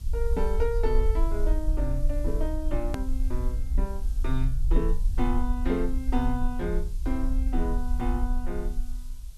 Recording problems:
background hiss; SNR 22 dB
low-frequency rumble; below 48 Hz, SNR -2 dB
edit click; at 3 s

